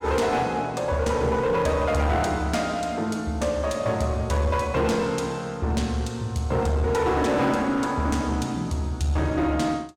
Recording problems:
distortion; hard clipping, uneven, signal-to-distortion ratio 10 dB

